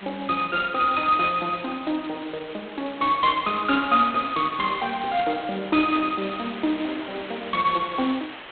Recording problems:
phone line; 260 Hz to 3.7 kHz, G.726
background hiss; SNR 15 dB

